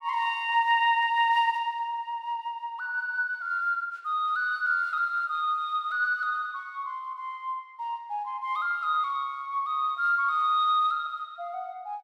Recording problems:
none

